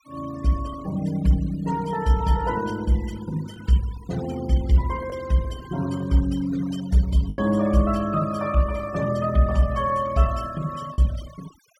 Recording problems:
noise reduction artefacts; signal-to-artefact ratio 20 dB
lost packets; 1.4% of the sound replaced, filled with the last packet

